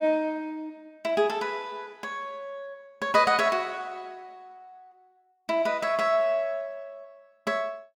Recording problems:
none

